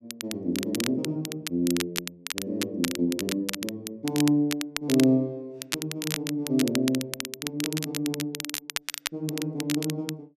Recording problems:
crackling; vinyl, SNR 5 dB

